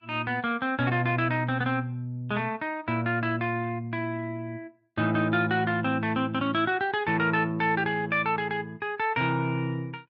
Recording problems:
lossy compression; Vorbis, log-spectral distance 2 dB

